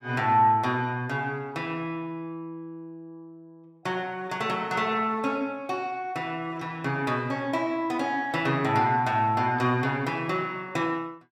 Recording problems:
none

